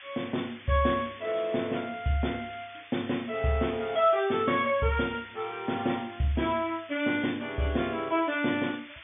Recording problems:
treble missing; nothing above 3.6 kHz
hiss; SNR 19 dB

